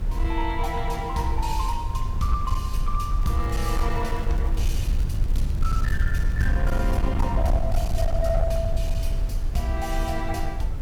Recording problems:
distortion; hard clipping, signal-to-distortion ratio 12 dB
background hiss; slope -7 dB per octave, SNR 13 dB
low-frequency rumble; below 70 Hz, SNR -2 dB
crackling; from 3 to 5.5 s and at 5.5 s; loose cable, SNR 23 dB

